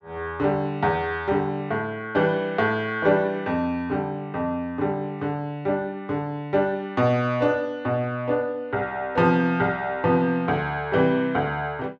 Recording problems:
none

